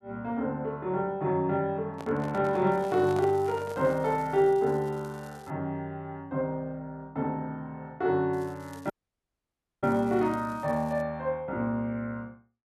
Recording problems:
microphone handling noise; from 2 to 4 s; peak -7 dB vs average level
crackling; from 2.5 to 5.5 s and from 8.5 to 11 s; loose cable, SNR 27 dB
dropout; at 9 s for 1 s

